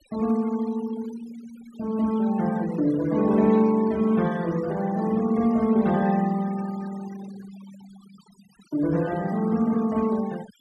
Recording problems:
denoising artefacts; signal-to-artefact ratio 20 dB

